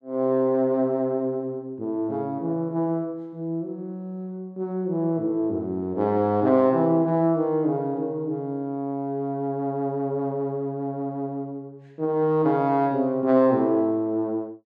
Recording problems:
none

